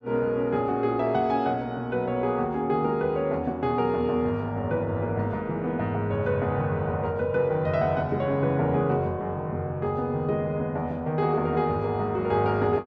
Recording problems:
none

